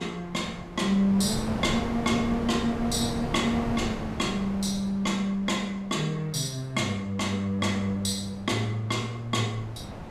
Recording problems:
wind on the microphone; below 680 Hz, SNR 8 dB

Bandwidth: 15 kHz